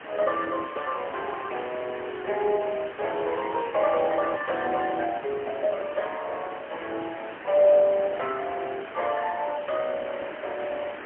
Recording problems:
phone line; 150 Hz to 3.1 kHz, AMR-NB, then MP3
hiss; SNR 12 dB
handling noise; from 3 to 6.5 s; peak -8 dB vs average level

